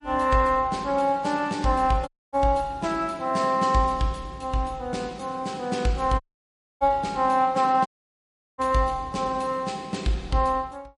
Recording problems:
lossy codec; MP3, log-spectral distance 2 dB, nothing above 10.1 kHz
audio cutting out; at 2 s, at 6 s for 0.5 s and at 8 s for 0.5 s

